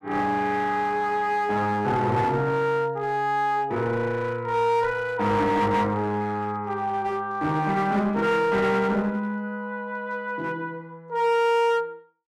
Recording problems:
distortion; hard clipping, uneven, signal-to-distortion ratio 10 dB

